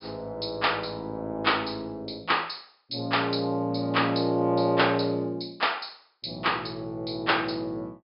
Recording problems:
low-pass filter; nothing above 5.5 kHz

